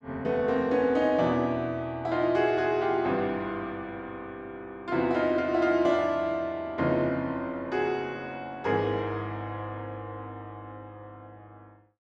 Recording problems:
none

